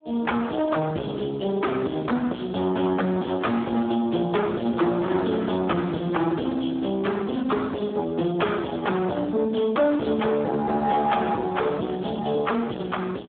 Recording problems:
phone line; 150 Hz to 3.6 kHz, Speex
distortion; soft clipping, signal-to-distortion ratio 8 dB

